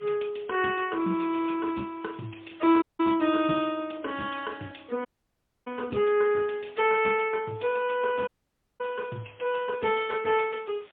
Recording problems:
telephone audio; 170 Hz to 3.5 kHz, AMR-NB, then MP3
hiss; SNR 27 dB
dropout; at 3 s, at 5 s for 0.5 s and at 8.5 s for 0.5 s

